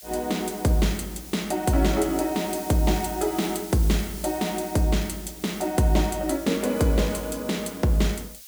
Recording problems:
background hiss; slope +6 dB per octave, SNR 14 dB

